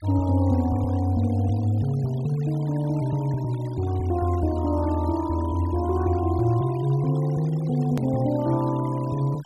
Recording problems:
denoising artefacts; signal-to-artefact ratio 22 dB
click at an edit; at 8 s

